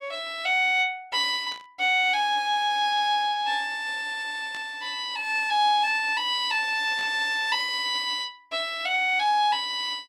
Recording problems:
burst of static; at 1.5 s, at 4.5 s and at 7 s; peak -13 dB vs average level

